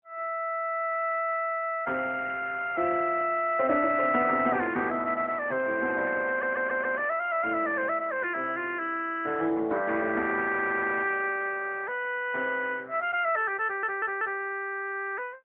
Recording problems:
phone line; 240 Hz to 3.3 kHz, AMR-NB
audio stuttering; at 6.5 s, at 10 s and at 14 s

